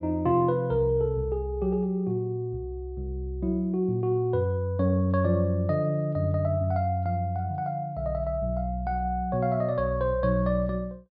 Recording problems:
treble cut off; nothing above 5.5 kHz

